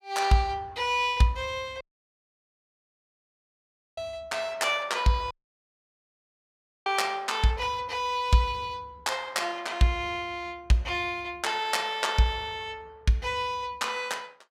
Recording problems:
audio cutting out; at 2 s for 2 s and at 5.5 s for 1.5 s

